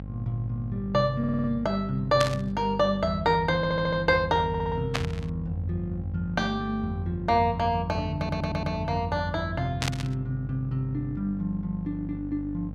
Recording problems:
hum; 50 Hz, harmonics up to 600 Hz, SNR 10 dB
stutter; 4 times, first at 1 s
static burst; at 2 s, at 5 s and at 10 s; peak +3 dB vs average level

